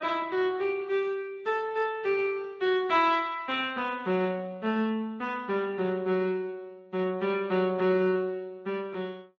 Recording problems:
lossy codec; Speex, then MP3, log-spectral distance 2 dB, nothing above 6.9 kHz

